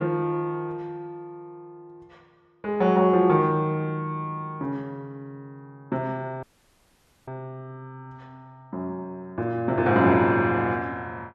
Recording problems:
dropout; at 6.5 s for 1 s

